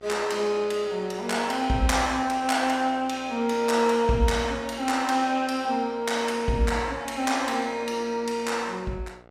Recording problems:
hum; 60 Hz, harmonics up to 2.9 kHz, SNR 27 dB

